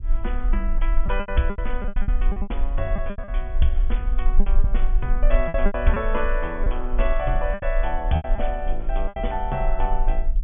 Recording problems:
treble missing; nothing above 3.5 kHz
low-frequency rumble; below 36 Hz, strongest tone 18 Hz, SNR -2 dB
packet loss; 11% of the sound replaced, filled with repeated pitch periods

